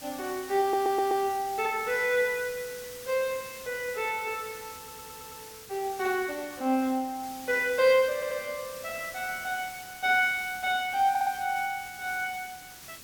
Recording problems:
background hiss; SNR 15 dB
audio stuttering; 4 times, first at 0.5 s

